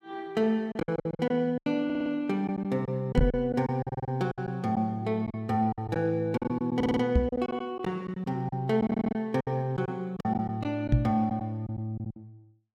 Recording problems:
packet loss; 12% of the sound replaced, filled with silence
audio stuttering; 4 times, first at 2 s
knock on the microphone; at 3 s, at 7 s and at 11 s; peak +9 dB vs average level

